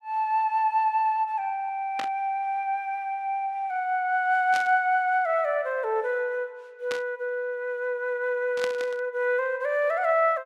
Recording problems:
burst of static; 4 times, first at 2 s; peak -4 dB vs average level

